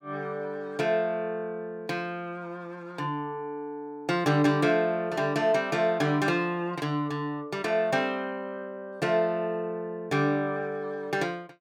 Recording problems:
none

